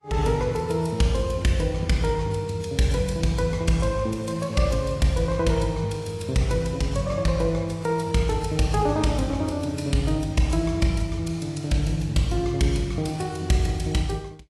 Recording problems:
lossy compression; AAC, log-spectral distance 2 dB, nothing above 11 kHz

